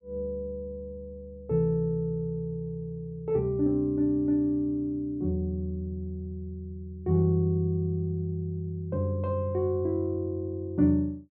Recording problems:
none

